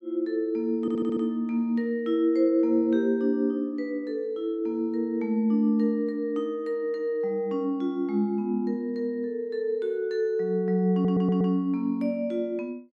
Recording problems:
audio stuttering; at 1 s and at 11 s

